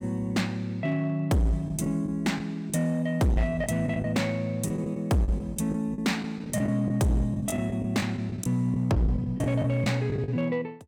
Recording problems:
distortion; hard clipping, signal-to-distortion ratio 11 dB
packet loss; 10% of the sound replaced, filled with the last packet

